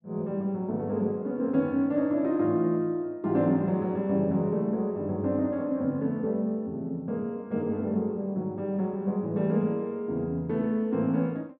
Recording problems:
none

